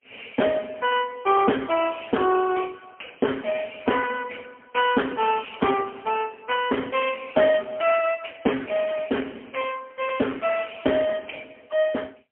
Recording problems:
phone line; 240 Hz to 3.3 kHz, AMR-NB, then MP3

